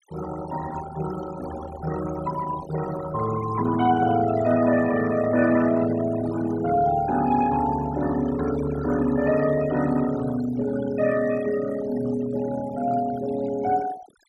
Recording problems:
denoising artefacts; signal-to-artefact ratio 14 dB

